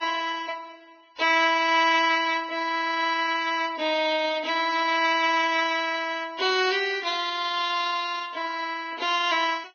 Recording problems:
lossy compression; Vorbis, log-spectral distance 3 dB, nothing above 6.3 kHz

